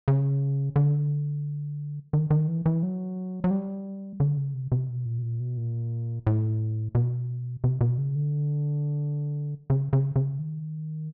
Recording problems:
low-pass filter; nothing above 5.9 kHz

